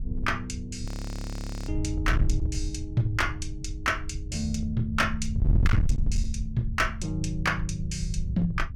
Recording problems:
distorted audio; hard clipping, uneven, signal-to-distortion ratio 6 dB
wind noise; below 96 Hz, SNR 2 dB
audio freezing; at 1 s for 1 s

